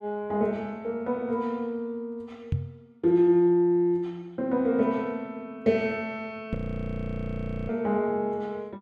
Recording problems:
knock on the microphone; at 2.5 s and at 6.5 s; peak +3 dB vs average level
frozen audio; at 6.5 s for 1 s

